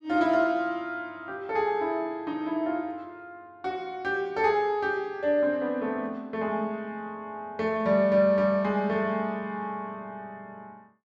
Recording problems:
none

